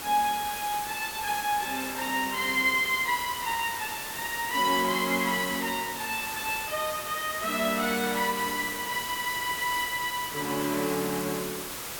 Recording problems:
hiss; slope -2 dB per octave, SNR 6 dB

